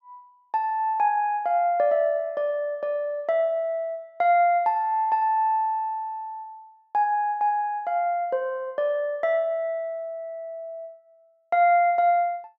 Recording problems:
none

